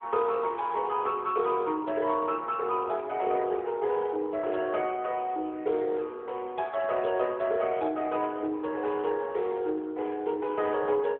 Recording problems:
phone line; 280 Hz to 3.8 kHz, AMR-NB

